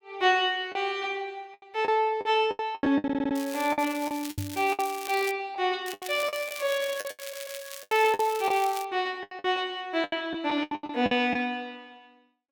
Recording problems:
lost packets; 14% of the sound replaced, filled with the last packet
audio stuttering; at 3 s and at 7 s
crackling; from 3.5 to 5.5 s and from 6 to 9 s; loose cable, SNR 13 dB
microphone bump; at 4.5 s; peak -3 dB vs average level

